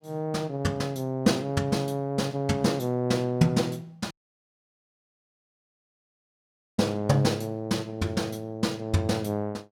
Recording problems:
dropout; at 4 s for 2.5 s

